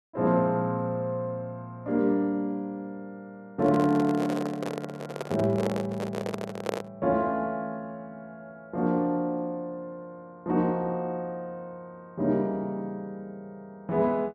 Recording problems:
microphone handling noise; from 3.5 to 7 s; peak +3 dB vs average level

